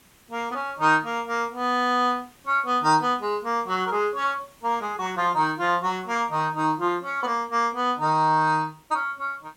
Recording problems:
hiss; slope -2 dB per octave, SNR 30 dB

